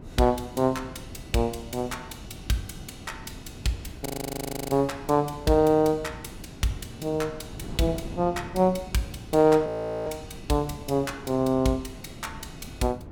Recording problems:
wind noise; below 300 Hz, SNR 16 dB
audio freezing; at 4 s for 0.5 s and at 9.5 s

